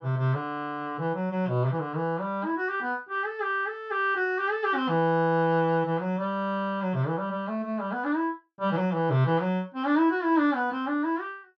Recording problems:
none

